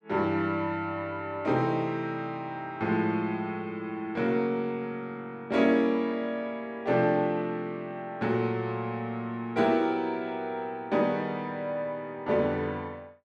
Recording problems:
none

